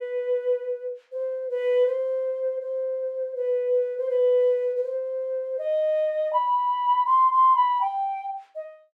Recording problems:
none

